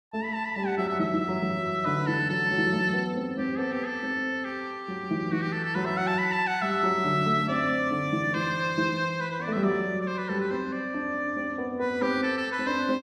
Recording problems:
none

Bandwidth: 14 kHz